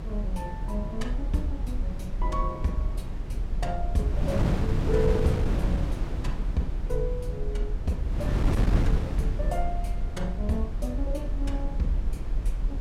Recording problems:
rumble; below 42 Hz, strongest tone 40 Hz, SNR 1 dB
wind on the microphone; below 190 Hz, SNR -1 dB

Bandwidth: 16 kHz